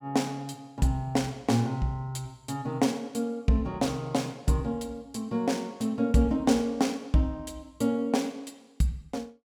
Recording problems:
none

